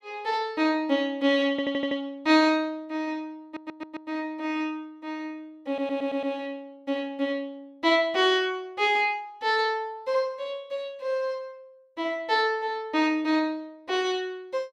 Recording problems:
stutter; at 1.5 s, at 3.5 s and at 5.5 s

